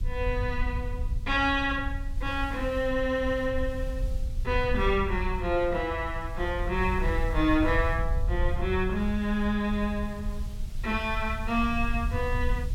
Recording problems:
background hiss; slope -1 dB per octave, SNR 25 dB
rumble; below 74 Hz, SNR 5 dB

